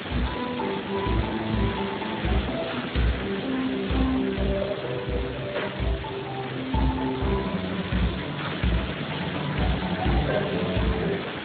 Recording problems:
codec artefacts; AAC, then Speex, log-spectral distance 19 dB
hiss; SNR 6 dB

